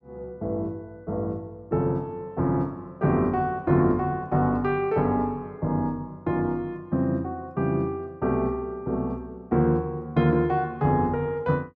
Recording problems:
none

